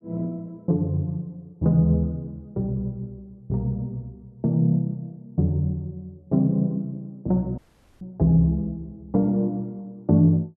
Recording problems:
audio cutting out; at 7.5 s

